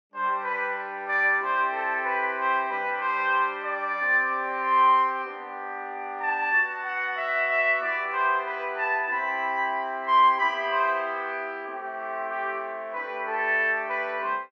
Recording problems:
none

